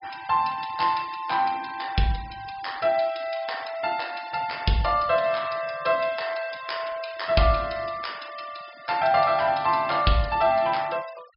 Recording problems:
treble missing; nothing above 5.5 kHz
denoising artefacts; signal-to-artefact ratio 21 dB

